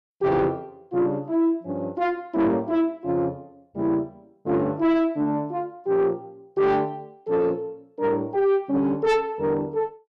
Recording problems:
distortion; soft clipping, signal-to-distortion ratio 11 dB

